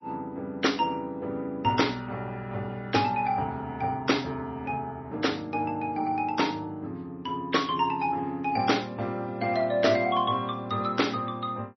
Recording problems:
lossy codec; MP3, log-spectral distance 2 dB, nothing above 5.8 kHz

